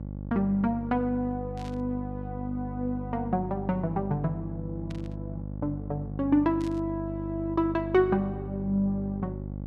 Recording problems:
hum; 50 Hz, harmonics up to 800 Hz, SNR 7 dB
burst of static; at 1.5 s, at 5 s and at 6.5 s; peak -14 dB vs average level

